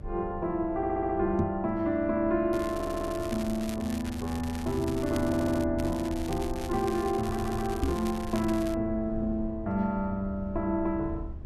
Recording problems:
low-frequency rumble; below 90 Hz, SNR 13 dB
stutter; 4 times, first at 1 s
microphone thump; at 1.5 s and at 8 s; peak +4 dB vs average level
crackle; from 2.5 to 5.5 s and from 6 to 8.5 s; loose cable, SNR 15 dB

